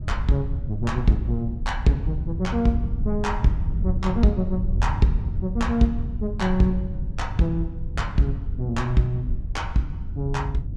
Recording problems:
low-frequency rumble; below 94 Hz, SNR 4 dB

